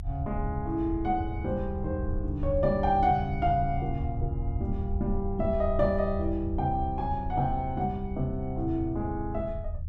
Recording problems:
rumble; below 80 Hz, SNR 6 dB

